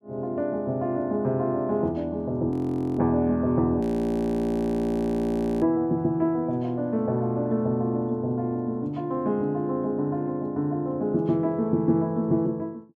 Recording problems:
audio freezing; at 2.5 s and at 4 s for 2 s

